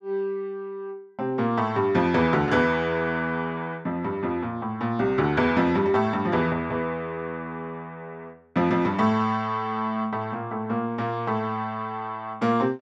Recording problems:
none

